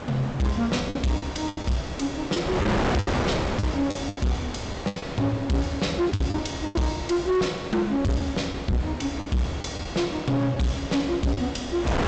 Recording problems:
lossy codec; G.722, log-spectral distance 3 dB, nothing above 7.6 kHz
distortion; hard clipping, uneven, signal-to-distortion ratio 8 dB
wind noise; below 1.1 kHz, SNR 6 dB
packet loss; 8% of the sound replaced, filled with the last packet

